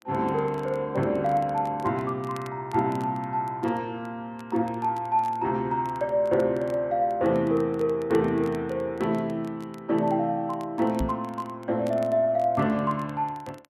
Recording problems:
crackling; vinyl, SNR 27 dB
microphone bump; at 11 s; peak 0 dB vs average level

